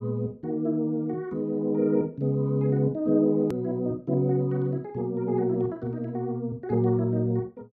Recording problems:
hard cut with a click; at 3.5 s

